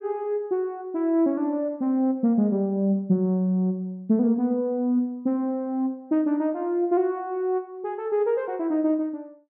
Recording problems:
none

